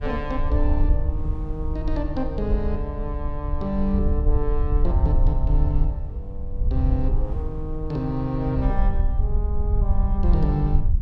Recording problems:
rumble; below 64 Hz, SNR -3 dB
wind noise; below 170 Hz, SNR 17 dB

